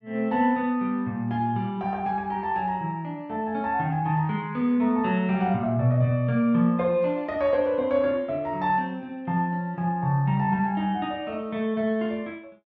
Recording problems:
low-pass filter; nothing above 8 kHz

